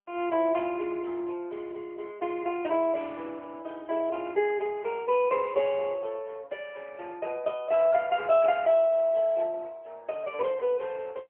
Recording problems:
phone line; 370 Hz to 3.1 kHz, AMR-NB

